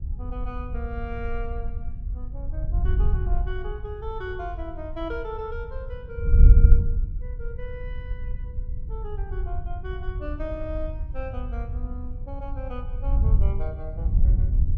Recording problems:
wind noise; below 66 Hz, SNR -10 dB

